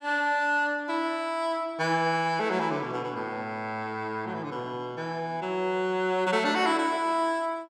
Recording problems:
none

